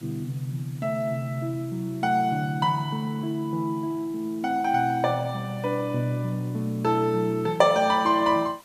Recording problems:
hiss; slope -2 dB per octave, SNR 26 dB

